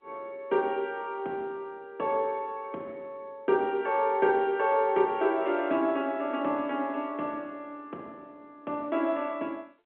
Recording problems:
telephone audio; 240 Hz to 3.3 kHz, G.711

